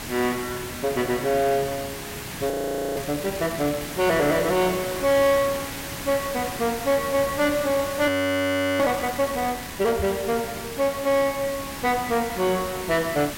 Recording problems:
distortion; soft clipping, signal-to-distortion ratio 12 dB
hiss; slope -2 dB per octave, SNR 9 dB
audio freezing; at 2.5 s and at 8 s for 0.5 s
microphone thump; at 10 s; peak -3 dB vs average level

